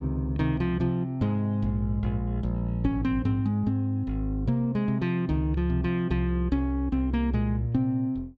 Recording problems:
none

